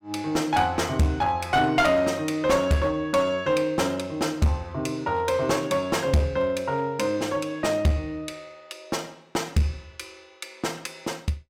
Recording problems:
distorted audio; hard clipping, uneven, signal-to-distortion ratio 10 dB

